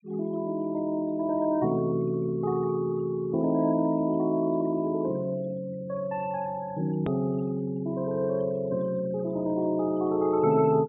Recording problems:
low-pass filter; nothing above 3.7 kHz
noise reduction artefacts; signal-to-artefact ratio 24 dB
click at an edit; at 7 s

